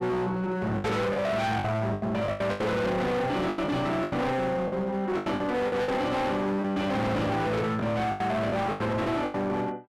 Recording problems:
distorted audio; hard clipping, uneven, signal-to-distortion ratio 6 dB
lost packets; 11% of the sound replaced, filled with the last packet

